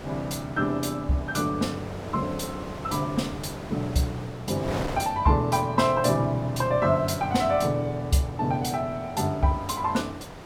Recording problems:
wind noise; below 1.1 kHz, SNR 13 dB

